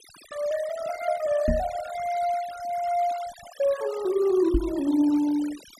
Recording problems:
denoising artefacts; signal-to-artefact ratio 18 dB
microphone bump; at 1.5 s and at 4.5 s; peak +4 dB vs average level

